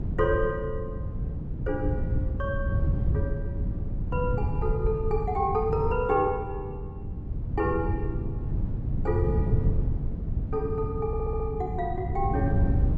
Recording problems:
hum; 60 Hz, harmonics up to 300 Hz, SNR 21 dB
wind noise; below 130 Hz, SNR 0 dB
stutter; at 11 s

